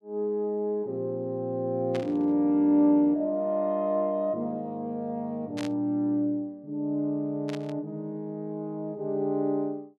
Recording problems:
static burst; at 2 s, at 5.5 s and at 7.5 s; peak -7 dB vs average level

